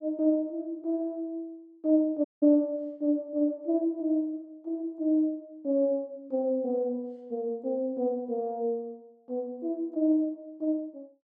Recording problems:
dropout; at 2.5 s

